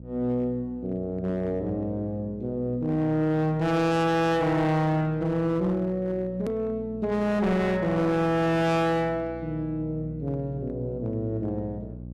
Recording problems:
distortion; hard clipping, signal-to-distortion ratio 6 dB
electrical hum; 60 Hz, harmonics up to 600 Hz, SNR 16 dB
click at an edit; at 6.5 s

